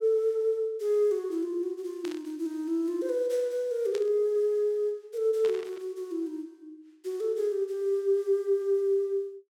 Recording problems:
burst of static; at 2 s, at 4 s and at 5.5 s; peak -9 dB vs average level

